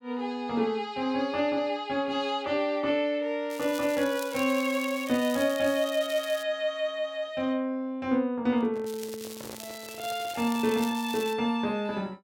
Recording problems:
crackle; from 3.5 to 6.5 s and from 9 to 11 s; loose cable, SNR 14 dB
handling noise; from 8.5 to 11 s; peak -10 dB vs average level

